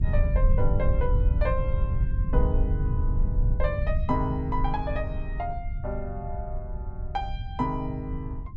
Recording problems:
low-frequency rumble; below 84 Hz, SNR -4 dB

